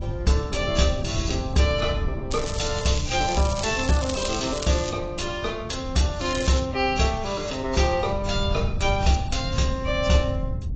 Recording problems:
codec artefacts; AAC, log-spectral distance 6 dB, nothing above 7.3 kHz
wind noise; below 110 Hz, SNR 8 dB
crackle; from 2.5 to 5 s and at 6 s; loose cable, SNR 9 dB

